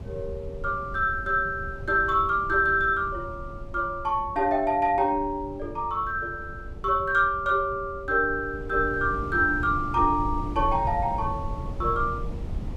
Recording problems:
wind on the microphone; below 120 Hz, SNR 12 dB

